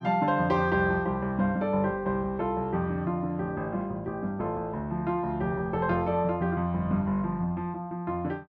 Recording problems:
none

